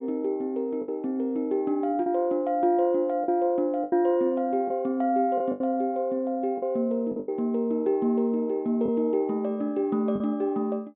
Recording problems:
low-pass filter; nothing above 3.7 kHz
lost packets; 5% of the sound replaced, filled with the last packet

